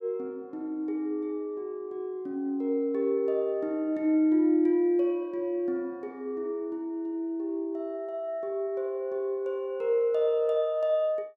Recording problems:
none

